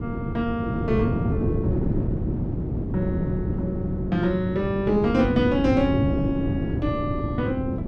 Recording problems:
wind noise; below 300 Hz, SNR 1 dB

